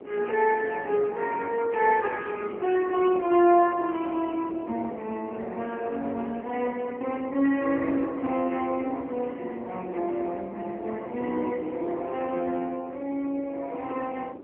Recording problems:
phone line; 260 Hz to 3 kHz, AMR-NB
wind on the microphone; below 500 Hz, SNR 16 dB

